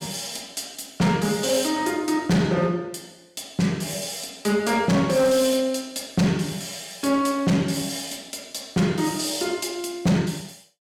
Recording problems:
distortion; hard clipping, signal-to-distortion ratio 12 dB

